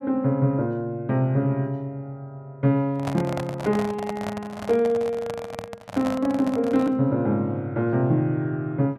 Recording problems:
microphone handling noise; from 3 to 7 s; peak -3 dB vs average level

